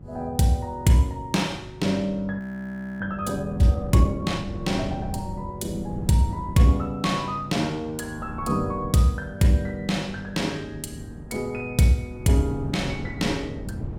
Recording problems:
hum; 50 Hz, harmonics up to 400 Hz, SNR 20 dB
wind noise; below 220 Hz, SNR 13 dB
frozen audio; at 2.5 s for 0.5 s

